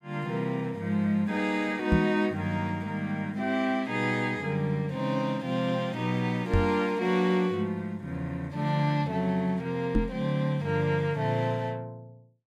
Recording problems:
microphone thump; at 2 s, at 6.5 s and at 10 s; peak +7 dB vs average level

